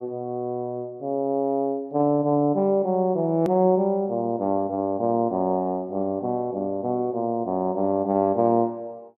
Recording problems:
click at an edit; at 3.5 s

